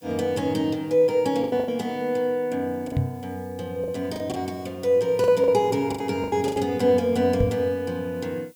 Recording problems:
hiss; slope +2 dB per octave, SNR 30 dB
packet loss; 8% of the sound replaced, filled with the last packet
microphone bump; at 3 s and at 7.5 s; peak +3 dB vs average level

